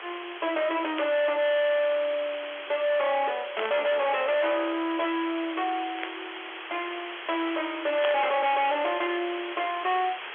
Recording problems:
telephone audio; 340 Hz to 3.5 kHz, G.711
distorted audio; hard clipping, uneven, signal-to-distortion ratio 6 dB
background hiss; SNR 10 dB
static burst; 4 times, first at 1 s; peak +1 dB vs average level

